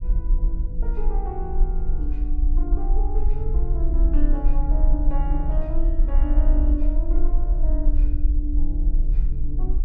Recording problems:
low-frequency rumble; below 44 Hz, SNR -9 dB

